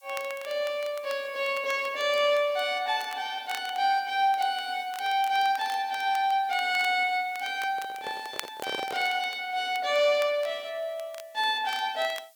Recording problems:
background hiss; slope +4 dB per octave, SNR 30 dB
crackle; vinyl, SNR 19 dB
handling noise; from 7.5 to 9 s; peak -5 dB vs average level

